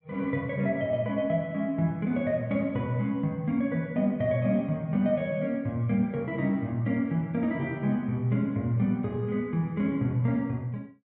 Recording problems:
none

